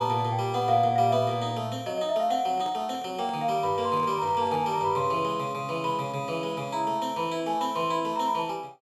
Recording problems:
handling noise; from 2.5 to 5 s; peak -12 dB vs average level

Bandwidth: 14.5 kHz